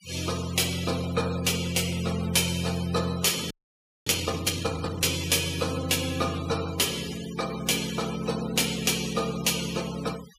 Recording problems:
noise reduction artefacts; signal-to-artefact ratio 14 dB
frozen audio; at 3.5 s for 0.5 s

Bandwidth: 15.5 kHz